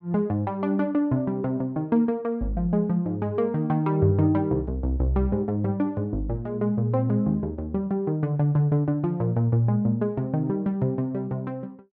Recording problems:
none

